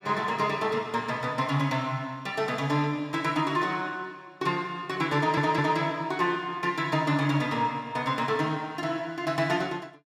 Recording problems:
stutter; at 5 s

